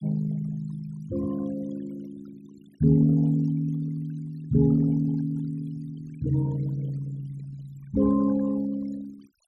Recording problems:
denoising artefacts; signal-to-artefact ratio 23 dB

